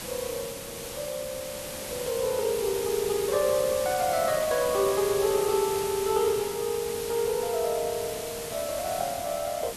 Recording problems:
hiss; slope -2 dB per octave, SNR 7 dB

